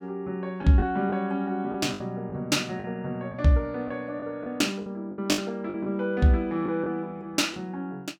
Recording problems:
packet loss; 7% of the sound replaced, filled with the last packet

